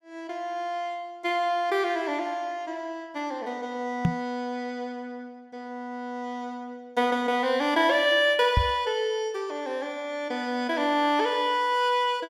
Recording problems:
microphone thump; at 4 s and at 8.5 s; peak +7 dB vs average level

